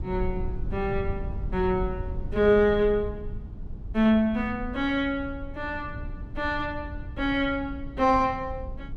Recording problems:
low-frequency rumble; below 98 Hz, SNR 11 dB

